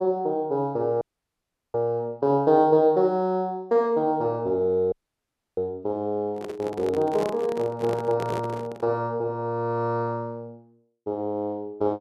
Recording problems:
audio cutting out; at 1 s for 0.5 s and at 5 s for 0.5 s
microphone handling noise; from 6.5 to 9 s; peak -2 dB vs average level

